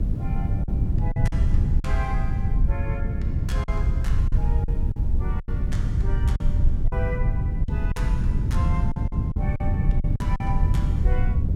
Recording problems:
hum; 50 Hz, harmonics up to 750 Hz, SNR 17 dB
background hiss; slope -6 dB per octave, SNR 19 dB
low-frequency rumble; below 66 Hz, SNR -9 dB
wind noise; below 150 Hz, SNR -10 dB
lost packets; 7% of the sound replaced, filled with silence

